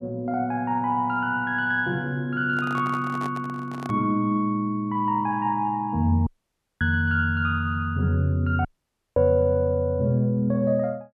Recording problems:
handling noise; from 2.5 to 4 s; peak -8 dB vs average level
audio cutting out; at 6.5 s for 0.5 s and at 8.5 s for 0.5 s

